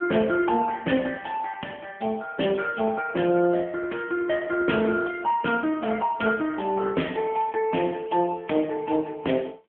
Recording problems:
telephone audio; 190 Hz to 3.3 kHz, AMR-NB

